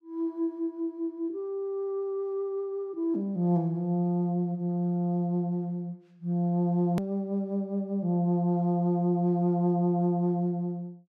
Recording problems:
hard cut with a click; at 7 s

